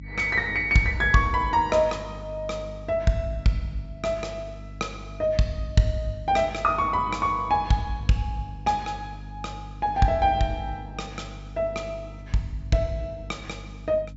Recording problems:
treble missing; nothing above 7.5 kHz
hum; 50 Hz, harmonics up to 300 Hz, SNR 15 dB

